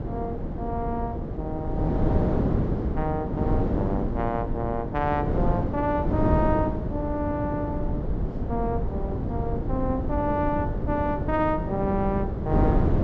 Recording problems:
treble missing; nothing above 7.8 kHz
low-frequency rumble; below 110 Hz, SNR 9 dB
wind on the microphone; below 340 Hz, SNR -1 dB

